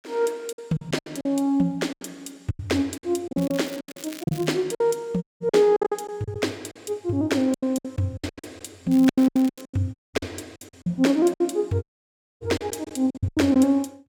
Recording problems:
lost packets; 17% of the sound replaced, filled with silence
crackle; from 3.5 to 4.5 s and at 9 s; loose cable, SNR 19 dB
audio cutting out; at 5 s, at 10 s and at 12 s for 0.5 s

